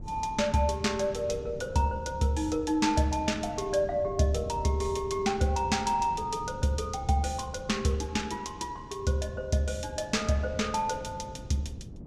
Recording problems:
wind noise; below 230 Hz, SNR 15 dB

